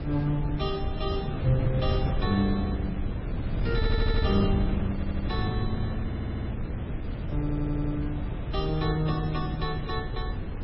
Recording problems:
lossy compression; MP3, log-spectral distance 2 dB, nothing above 5.5 kHz
wind on the microphone; below 160 Hz, SNR 0 dB
audio stuttering; 4 times, first at 4 s

